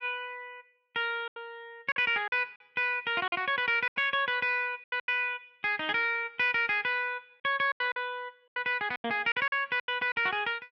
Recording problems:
packet loss; 10% of the sound replaced, filled with silence

